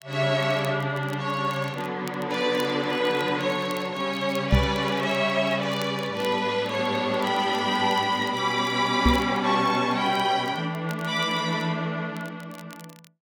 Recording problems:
crackling; vinyl, SNR 23 dB
microphone bump; at 4.5 s and at 9 s; peak +8 dB vs average level

